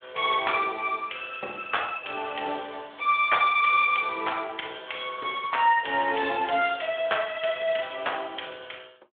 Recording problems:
telephone audio; 240 Hz to 3.5 kHz, Speex

